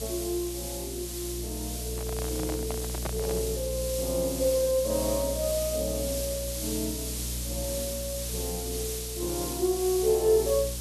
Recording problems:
electrical hum; 60 Hz, harmonics up to 600 Hz, SNR 7 dB
hiss; SNR 4 dB
handling noise; from 2 to 3.5 s; peak 0 dB vs average level

